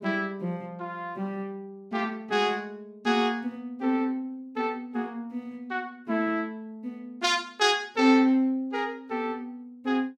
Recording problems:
none

